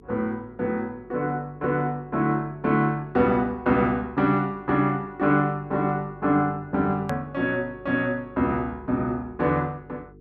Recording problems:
hum; 50 Hz, harmonics up to 450 Hz, SNR 24 dB
edit click; at 7 s

